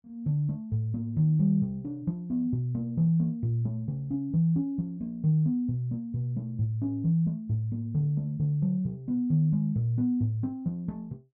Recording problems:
none

